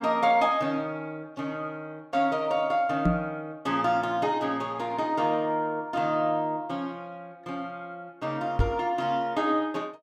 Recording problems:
microphone bump; at 3 s and at 8.5 s; peak +7 dB vs average level

